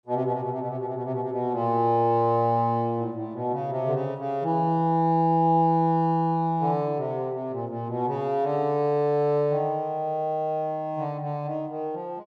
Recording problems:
none

